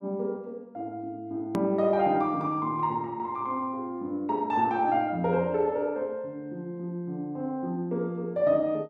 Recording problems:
click at an edit; at 1.5 s

